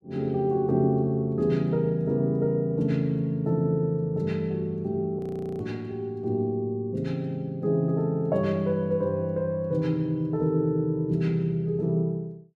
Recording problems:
frozen audio; at 5 s

